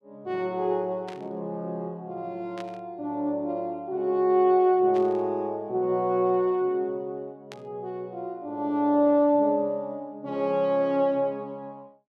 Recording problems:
burst of static; 4 times, first at 1 s; peak -13 dB vs average level

